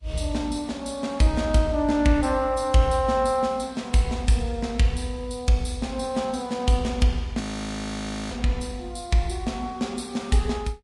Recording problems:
lossy codec; Vorbis, log-spectral distance 3 dB, nothing above 10.4 kHz
frozen audio; at 7.5 s for 1 s

